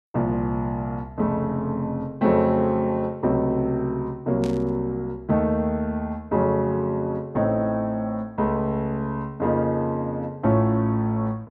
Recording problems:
burst of static; at 4.5 s; peak -12 dB vs average level

